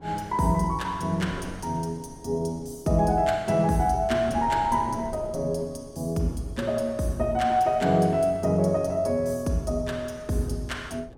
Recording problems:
wind noise; below 430 Hz, SNR 19 dB

